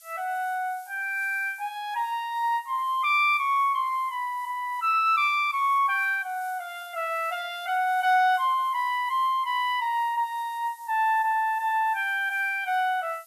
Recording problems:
background hiss; SNR 26 dB

